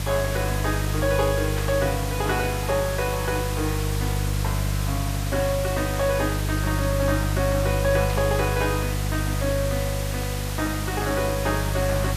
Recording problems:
hum; 50 Hz, harmonics up to 500 Hz, SNR 1 dB
hiss; slope -1 dB per octave, SNR 6 dB
static burst; at 1.5 s and at 8 s; peak -4 dB vs average level

